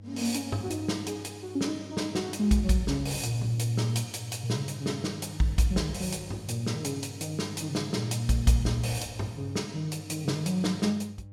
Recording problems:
hum; 50 Hz, harmonics up to 600 Hz, SNR 17 dB

